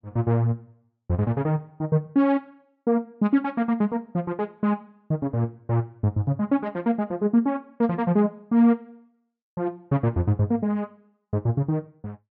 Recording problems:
treble cut off; nothing above 8 kHz

